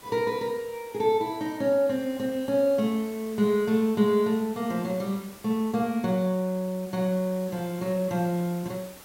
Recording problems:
background hiss; slope -3 dB per octave, SNR 20 dB

